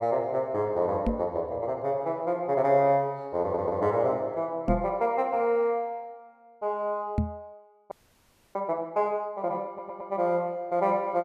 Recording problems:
knock on the microphone; at 1 s, at 4.5 s and at 7 s; peak +4 dB vs average level
audio stuttering; at 3.5 s and at 9.5 s
frozen audio; at 8 s for 0.5 s

